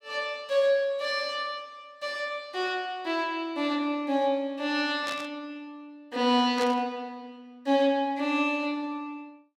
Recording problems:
static burst; at 5 s and at 6.5 s; peak -4 dB vs average level

